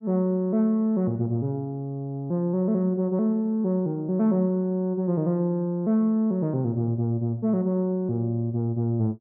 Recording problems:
none

